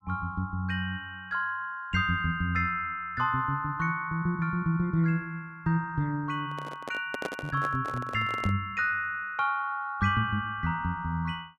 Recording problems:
handling noise; from 6.5 to 8.5 s; peak 0 dB vs average level

